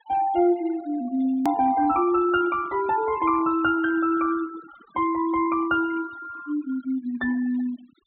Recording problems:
low-pass filter; nothing above 4 kHz
denoising artefacts; signal-to-artefact ratio 19 dB
hard cut with a click; at 1.5 s

